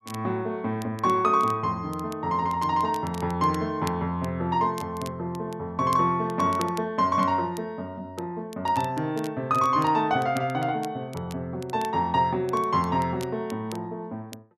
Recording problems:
crackle; vinyl, SNR 21 dB

